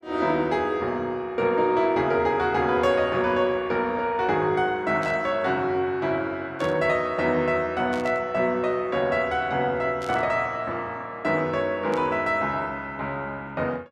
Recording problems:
static burst; 5 times, first at 5 s; peak -12 dB vs average level

